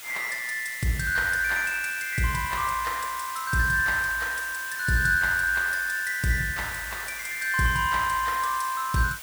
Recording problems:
hiss; slope +2 dB per octave, SNR 12 dB

